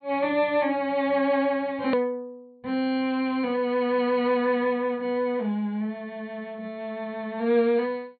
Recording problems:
treble cut off; nothing above 4.4 kHz
click at an edit; at 2 s

